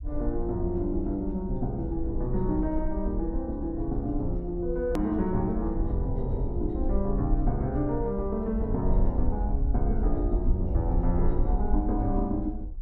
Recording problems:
rumble; below 56 Hz, SNR 3 dB
click at an edit; at 5 s

